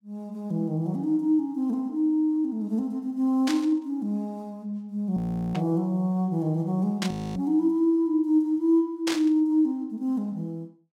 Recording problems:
burst of static; 4 times, first at 3.5 s; peak 0 dB vs average level
audio freezing; at 5 s and at 7 s

